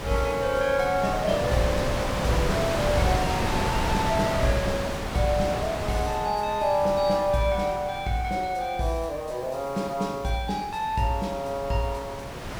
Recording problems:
background hiss; slope -3 dB per octave, SNR 20 dB
wind on the microphone; below 1.5 kHz, SNR 3 dB

